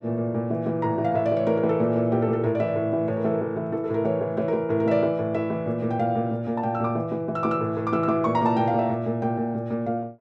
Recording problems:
none

